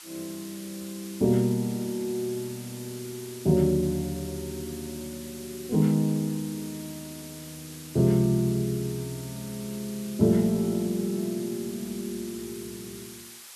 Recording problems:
hiss; slope +3 dB per octave, SNR 15 dB

